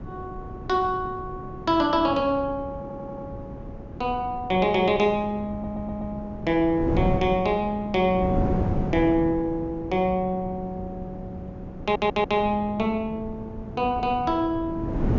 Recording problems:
treble missing; nothing above 7.2 kHz
wind on the microphone; below 310 Hz, SNR 9 dB
stutter; at 3 s, at 5.5 s and at 12 s

